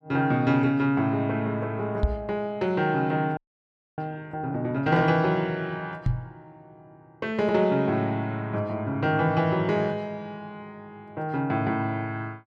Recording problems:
knock on the microphone; at 2 s and at 6 s; peak +6 dB vs average level
frozen audio; at 3.5 s for 0.5 s

